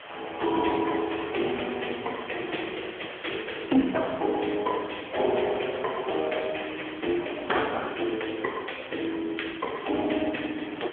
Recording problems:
phone line; 260 Hz to 3.4 kHz, AMR-NB
hiss; SNR 13 dB

